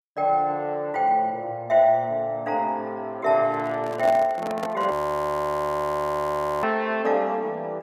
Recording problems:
handling noise; from 3.5 to 5 s; peak -4 dB vs average level
frozen audio; at 5 s for 1.5 s

